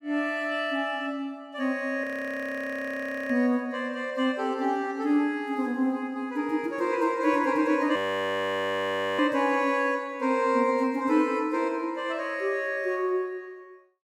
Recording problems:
audio freezing; at 2 s for 1.5 s and at 8 s for 1 s

